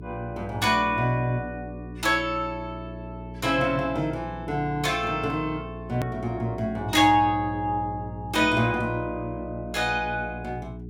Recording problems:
hum; 60 Hz, harmonics up to 420 Hz, SNR 13 dB
edit click; at 6 s

